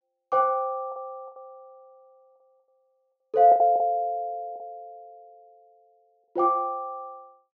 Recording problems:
treble missing; nothing above 6.9 kHz
lost packets; 7% of the sound replaced, filled with the last packet

